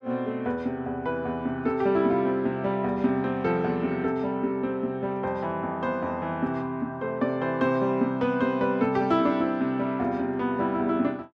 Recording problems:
none

